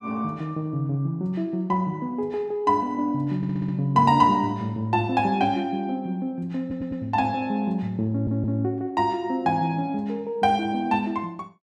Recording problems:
audio stuttering; at 3.5 s, at 6.5 s and at 8 s

